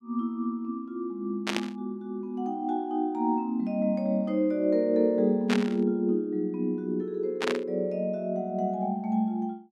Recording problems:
burst of static; at 1.5 s, at 5.5 s and at 7.5 s; peak +3 dB vs average level

